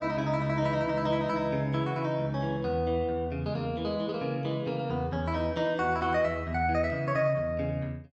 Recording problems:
none

